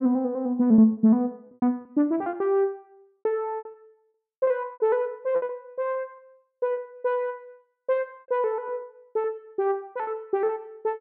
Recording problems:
lost packets; 10% of the sound replaced, filled with repeated pitch periods

